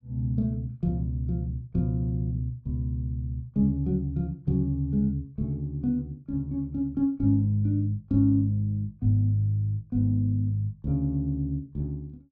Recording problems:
none

